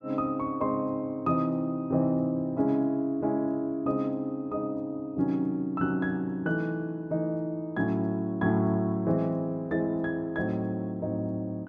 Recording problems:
none

